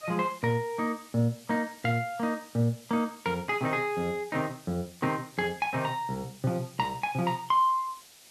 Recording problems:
hiss; SNR 21 dB

